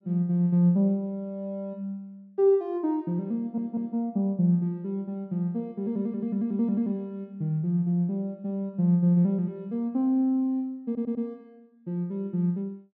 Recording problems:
stutter; at 3.5 s and at 11 s

